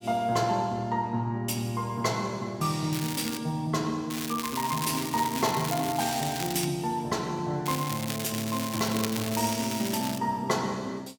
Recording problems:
crackling; at 3 s, from 4 to 6.5 s and from 7.5 to 10 s; loose cable, SNR 6 dB

